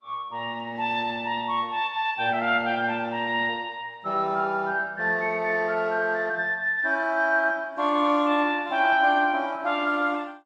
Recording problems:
lossy codec; Opus, then AAC, log-spectral distance 2 dB

